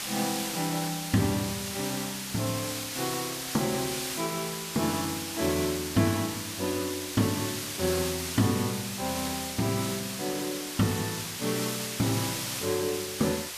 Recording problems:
background hiss; slope +1 dB per octave, SNR 3 dB

